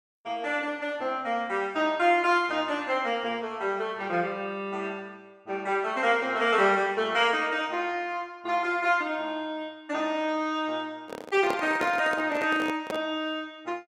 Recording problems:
microphone handling noise; from 11 to 13 s; peak 0 dB vs average level

